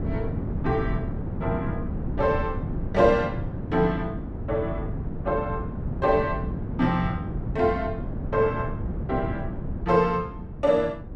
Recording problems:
wind noise; below 230 Hz, SNR 5 dB

